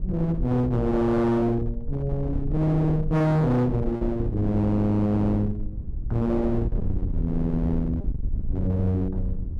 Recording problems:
distortion; hard clipping, signal-to-distortion ratio 6 dB
wind noise; below 98 Hz, SNR 8 dB
packet loss; 2% of the sound replaced, filled with repeated pitch periods

